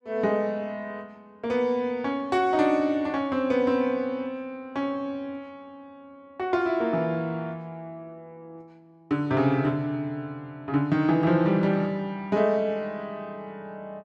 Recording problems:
none

